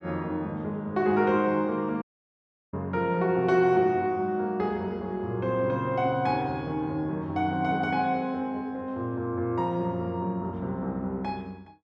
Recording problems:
dropout; at 2 s for 0.5 s

